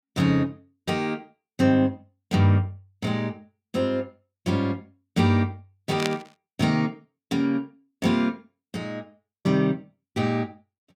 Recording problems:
burst of static; at 6 s; peak +2 dB vs average level

